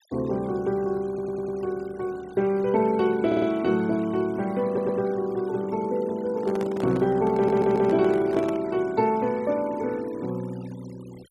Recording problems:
denoising artefacts; signal-to-artefact ratio 24 dB
stutter; 4 times, first at 1 s
handling noise; from 6.5 to 8.5 s; peak -6 dB vs average level

